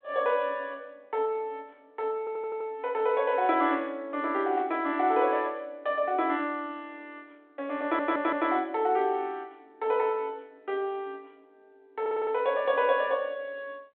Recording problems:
telephone audio; 220 Hz to 3.7 kHz, G.726
audio stuttering; at 2 s, at 8 s and at 12 s

